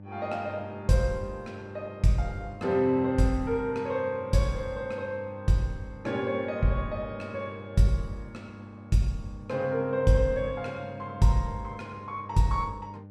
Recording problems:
electrical hum; 50 Hz, harmonics up to 900 Hz, SNR 16 dB

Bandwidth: 14.5 kHz